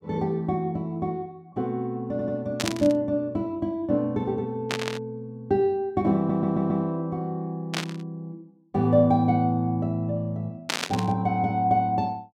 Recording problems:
stutter; at 2 s and at 6 s
burst of static; 4 times, first at 2.5 s; peak +4 dB vs average level

